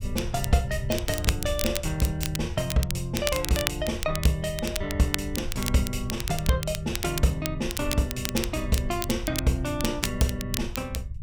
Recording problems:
rumble; below 90 Hz, SNR 9 dB
crackle; vinyl, SNR 6 dB

